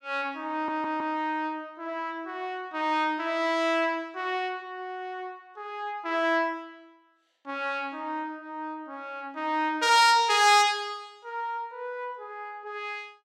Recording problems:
stutter; at 0.5 s

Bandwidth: 16.5 kHz